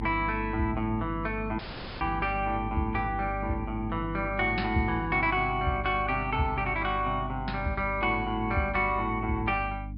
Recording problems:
treble cut off; nothing above 5.5 kHz
hum; 50 Hz, harmonics up to 300 Hz, SNR 9 dB
dropout; at 1.5 s

